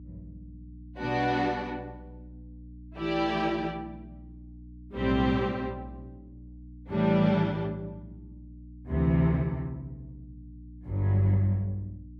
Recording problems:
electrical hum; 60 Hz, harmonics up to 300 Hz, SNR 19 dB

